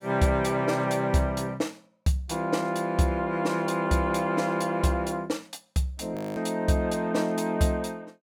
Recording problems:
frozen audio; at 6 s

